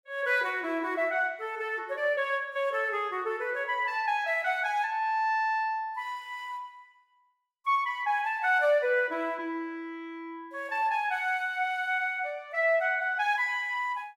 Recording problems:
none

